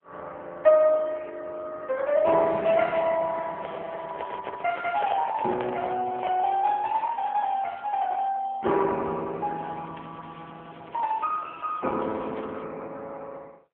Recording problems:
phone line; 280 Hz to 3.3 kHz, AMR-NB
microphone handling noise; from 3.5 to 6.5 s; peak -4 dB vs average level
crackle; from 3.5 to 5.5 s, from 6 to 8 s and from 9.5 to 13 s; loose cable, SNR 27 dB

